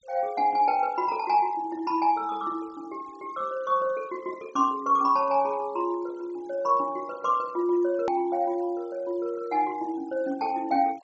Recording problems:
treble missing; nothing above 8 kHz
noise reduction artefacts; signal-to-artefact ratio 27 dB
hard cut with a click; at 8 s

